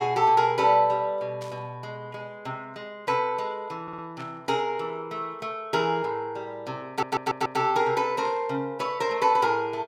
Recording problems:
burst of static; at 1.5 s, at 4 s and at 8.5 s; peak -14 dB vs average level
audio stuttering; at 4 s and at 7 s

